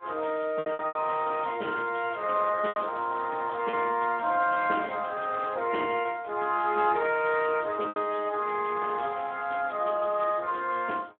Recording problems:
phone line; 260 Hz to 3.2 kHz, Speex
lost packets; 4% of the sound replaced, filled with repeated pitch periods

